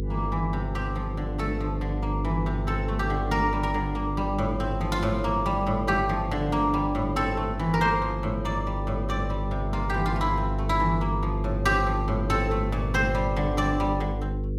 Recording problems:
hum; 50 Hz, harmonics up to 500 Hz, SNR 3 dB

